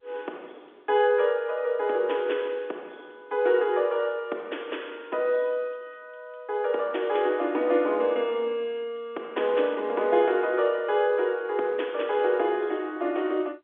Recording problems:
telephone audio; 280 Hz to 3.5 kHz, G.711

